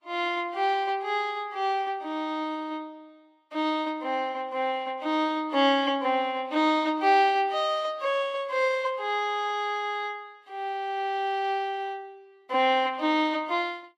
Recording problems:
codec artefacts; Vorbis, log-spectral distance 2 dB, nothing above 12.7 kHz

